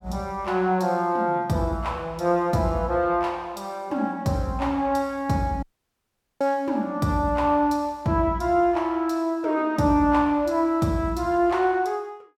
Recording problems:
dropout; at 5.5 s for 1 s

